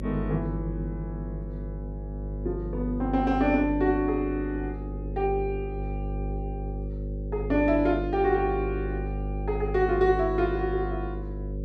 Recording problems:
hum; 50 Hz, harmonics up to 550 Hz, SNR 6 dB

